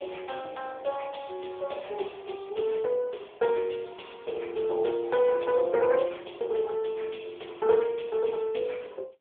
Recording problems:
phone line; 340 Hz to 3.5 kHz, AMR-NB

